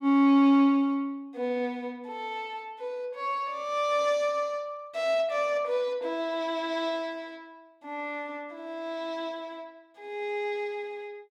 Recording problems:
none

